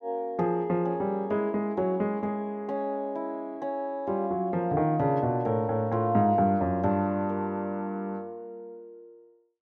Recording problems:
none

